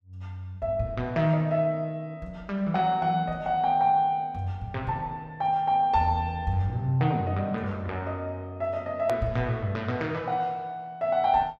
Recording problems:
hard cut with a click; at 9 s

